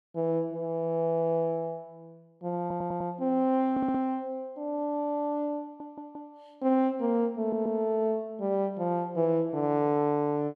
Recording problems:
stutter; 4 times, first at 2.5 s

